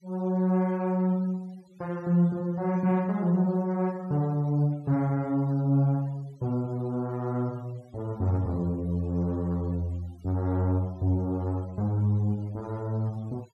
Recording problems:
denoising artefacts; signal-to-artefact ratio 27 dB

